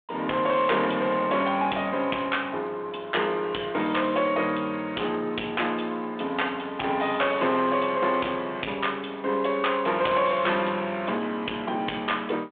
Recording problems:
telephone audio; 190 Hz to 3.5 kHz, G.726
distortion; soft clipping, signal-to-distortion ratio 10 dB
crackle; from 6.5 to 8 s; loose cable, SNR 27 dB

